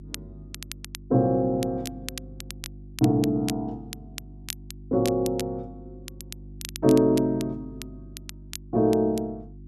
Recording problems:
mains hum; 50 Hz, harmonics up to 350 Hz, SNR 20 dB
crackle; vinyl, SNR 16 dB

